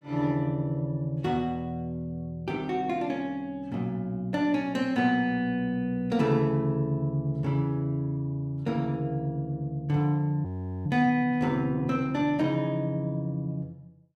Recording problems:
frozen audio; at 10 s

